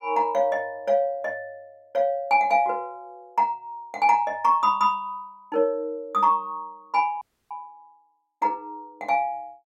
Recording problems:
audio freezing; at 7 s

